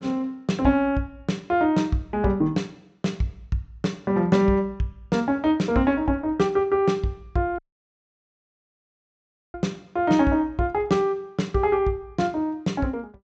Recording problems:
low-pass filter; nothing above 8 kHz
audio cutting out; at 7.5 s for 2 s

